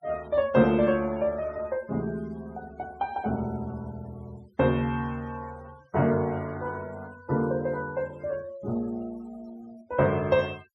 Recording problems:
denoising artefacts; signal-to-artefact ratio 23 dB

